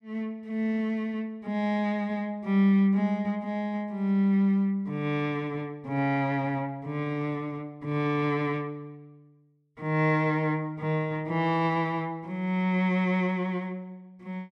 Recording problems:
none

